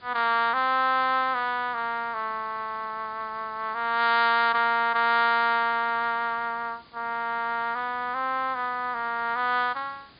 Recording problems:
treble missing; nothing above 4.9 kHz
hiss; SNR 28 dB

